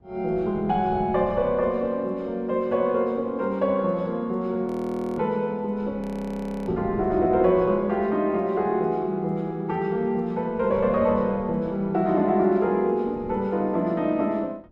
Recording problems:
wind noise; below 280 Hz, SNR 17 dB
audio freezing; at 4.5 s for 0.5 s and at 6 s for 0.5 s

